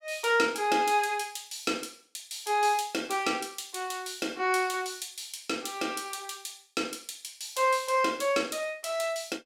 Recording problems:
none

